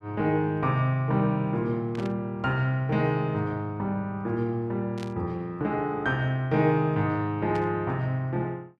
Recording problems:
static burst; at 2 s, at 5 s and at 7.5 s; peak -11 dB vs average level

